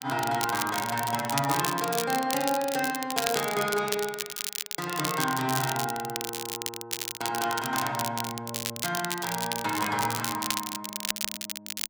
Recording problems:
crackling; vinyl, SNR 3 dB

